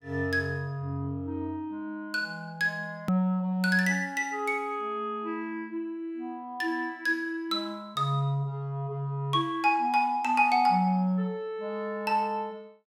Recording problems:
click at an edit; at 3 s

